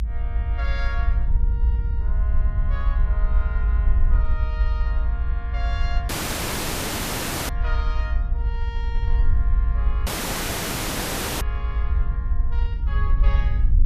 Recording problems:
low-frequency rumble; below 58 Hz, SNR -13 dB
dropout; at 6 s for 1.5 s and at 10 s for 1.5 s

